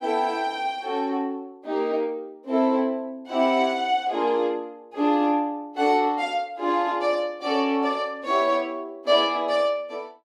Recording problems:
none

